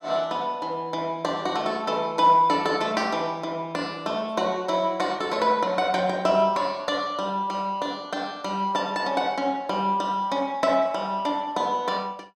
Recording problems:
none

